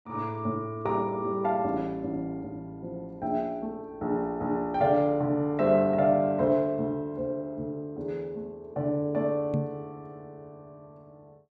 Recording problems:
microphone bump; at 9.5 s; peak +3 dB vs average level

